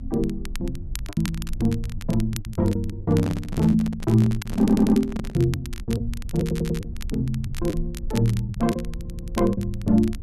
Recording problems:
low-frequency rumble; below 66 Hz, strongest tone 22 Hz, SNR 12 dB
crackle; vinyl, SNR 17 dB
packet loss; 8% of the sound replaced, filled with the last packet
handling noise; from 3 to 5.5 s; peak -1 dB vs average level
audio stuttering; at 4.5 s, at 6.5 s and at 9 s

